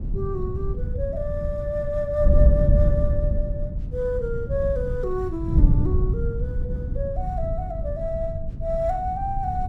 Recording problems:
wind on the microphone; below 100 Hz, SNR -2 dB

